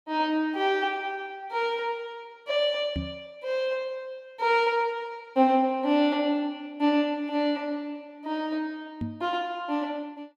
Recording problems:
knock on the microphone; at 3 s and at 9 s; peak -1 dB vs average level

